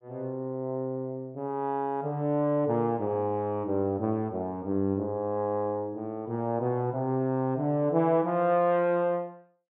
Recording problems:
treble cut off; nothing above 4 kHz

